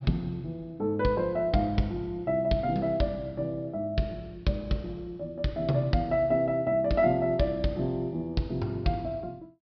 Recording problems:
treble missing; nothing above 5.5 kHz

